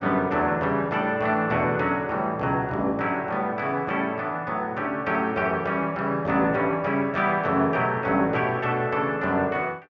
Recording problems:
none

